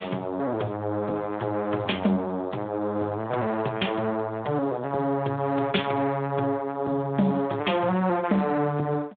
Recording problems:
phone line; 260 Hz to 3.7 kHz, Speex

